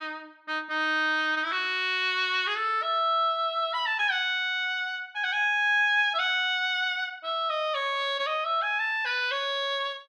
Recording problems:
none

